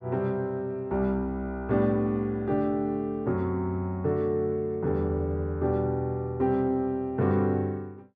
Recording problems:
none

